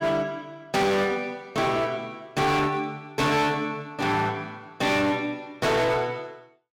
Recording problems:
distortion; hard clipping, signal-to-distortion ratio 7 dB

